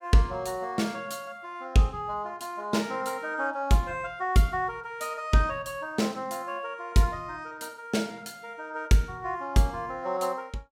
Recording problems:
none

